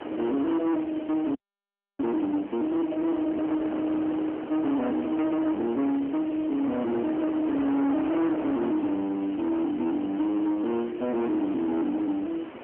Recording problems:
phone line; 690 Hz to 2.6 kHz, AMR-NB
distorted audio; soft clipping, signal-to-distortion ratio 9 dB
background hiss; SNR 20 dB
wind on the microphone; below 740 Hz, SNR 11 dB
frozen audio; at 1.5 s for 0.5 s

